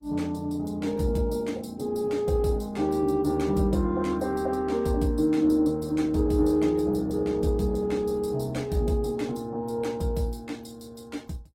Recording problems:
lossy compression; Opus, log-spectral distance 3 dB, nothing above 16 kHz

